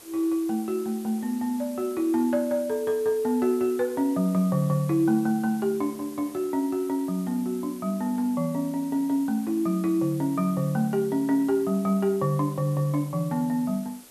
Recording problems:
hiss; slope -2 dB per octave, SNR 20 dB

